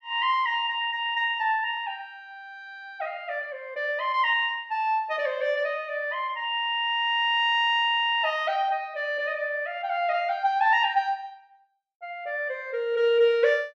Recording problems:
none

